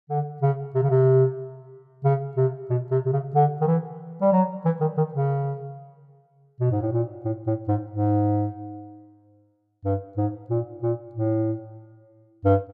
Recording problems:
none

